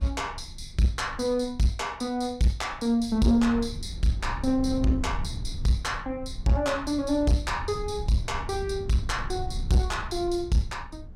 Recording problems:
distorted audio; soft clipping, signal-to-distortion ratio 10 dB
rumble; below 98 Hz, SNR 11 dB

